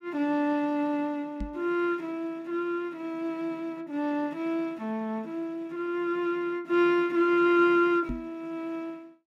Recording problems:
microphone thump; at 1.5 s and at 8 s; peak -2 dB vs average level

